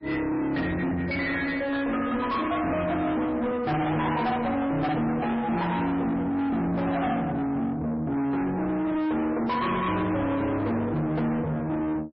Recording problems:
lossy compression; MP3, log-spectral distance 2 dB, nothing above 4.9 kHz
distortion; soft clipping, signal-to-distortion ratio 6 dB

